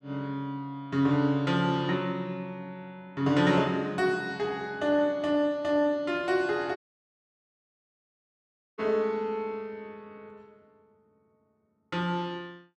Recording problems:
dropout; at 7 s for 2 s

